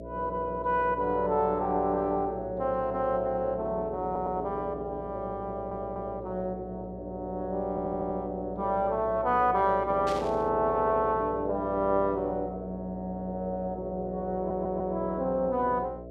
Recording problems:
hum; 60 Hz, harmonics up to 660 Hz, SNR 12 dB
stutter; 4 times, first at 4 s
burst of static; at 10 s; peak -7 dB vs average level

